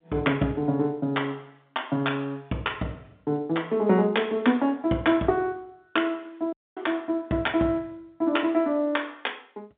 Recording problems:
telephone audio; 110 Hz to 3.6 kHz, G.711
dropout; at 6.5 s

